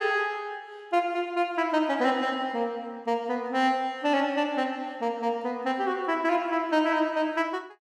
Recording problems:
none

